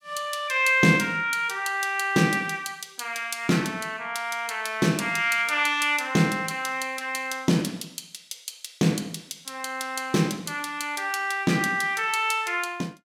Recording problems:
none

